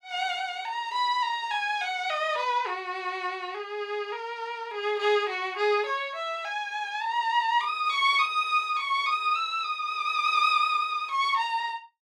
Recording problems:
none

